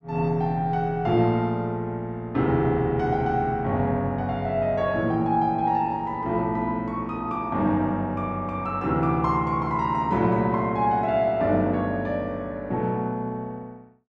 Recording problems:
none

